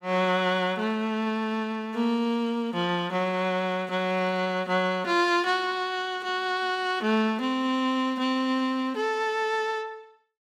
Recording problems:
none

